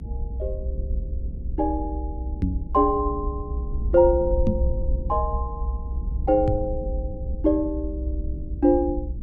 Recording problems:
rumble; below 64 Hz, SNR 6 dB
microphone bump; at 2.5 s, at 4.5 s and at 6.5 s; peak +4 dB vs average level

